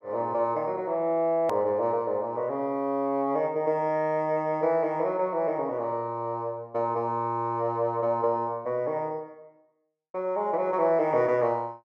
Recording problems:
edit click; at 1.5 s

